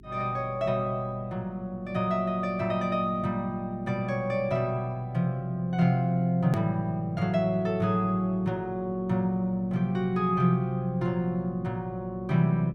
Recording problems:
mains hum; 50 Hz, harmonics up to 400 Hz, SNR 23 dB
hard cut with a click; at 6.5 s

